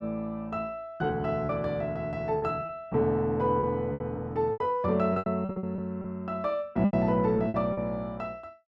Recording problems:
lost packets; 10% of the sound replaced, filled with repeated pitch periods

